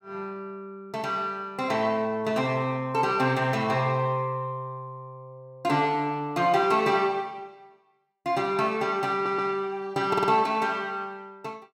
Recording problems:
stutter; at 9 s and at 10 s

